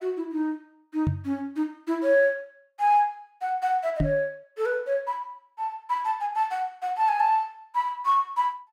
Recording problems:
microphone thump; at 1 s and at 4 s; peak +4 dB vs average level

